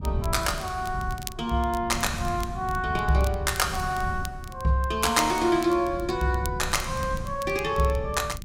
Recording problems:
wind on the microphone; below 140 Hz, SNR 10 dB
crackle; vinyl, SNR 18 dB

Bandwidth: 16 kHz